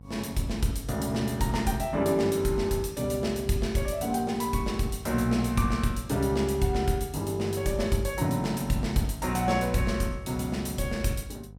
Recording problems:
hum; 50 Hz, harmonics up to 550 Hz, SNR 19 dB

